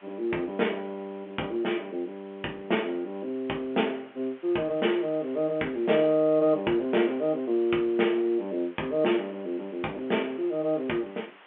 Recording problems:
telephone audio; 300 Hz to 3.3 kHz, G.711
background hiss; SNR 25 dB

